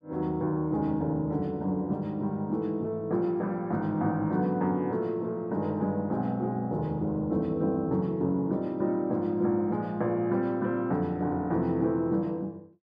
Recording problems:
none

